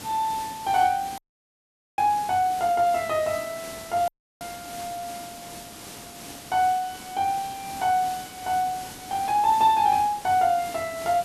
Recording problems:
background hiss; slope -2 dB per octave, SNR 15 dB
audio cutting out; at 1 s for 1 s and at 4 s

